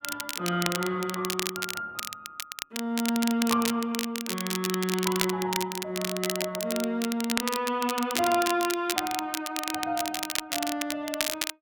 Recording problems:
crackle; vinyl, SNR 3 dB

